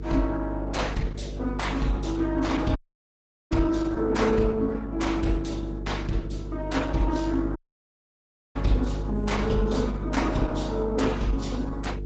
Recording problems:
lossy codec; AAC, then Opus, log-spectral distance 3 dB, nothing above 8 kHz
hum; 50 Hz, harmonics up to 450 Hz, SNR 7 dB
audio cutting out; at 3 s for 1 s and at 7.5 s for 1 s

